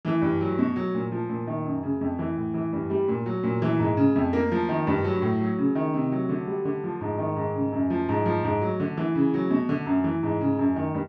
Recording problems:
none

